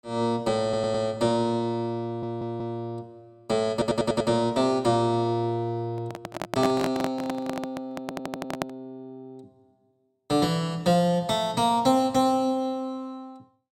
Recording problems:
audio stuttering; 4 times, first at 0.5 s
handling noise; from 6 to 8.5 s; peak +3 dB vs average level

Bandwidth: 16 kHz